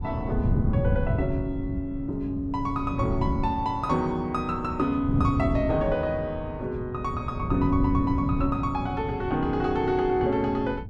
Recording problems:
wind noise; below 160 Hz, SNR 4 dB

